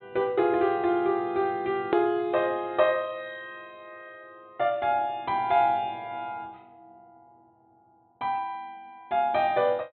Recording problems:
treble cut off; nothing above 4 kHz
edit click; at 2 s

